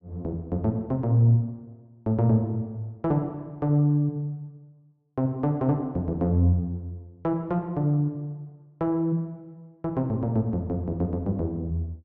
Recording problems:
none

